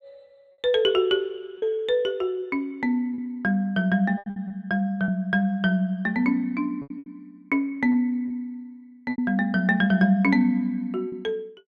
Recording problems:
lost packets; 6% of the sound replaced, filled with repeated pitch periods

